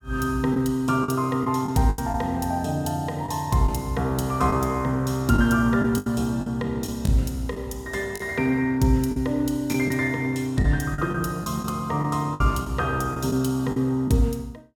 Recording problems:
packet loss; 6% of the sound replaced, filled with the last packet

